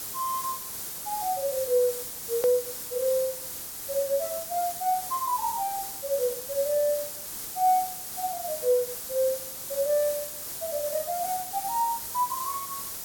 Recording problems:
hiss; SNR 5 dB
edit click; at 2.5 s

